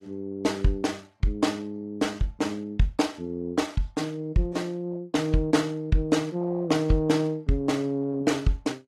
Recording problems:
lossy compression; AAC, log-spectral distance 2 dB, nothing above 13.5 kHz

